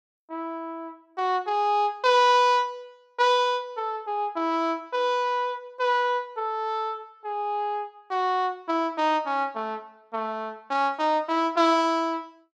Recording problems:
none

